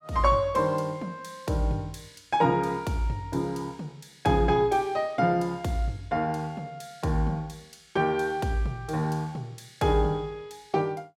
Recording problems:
none

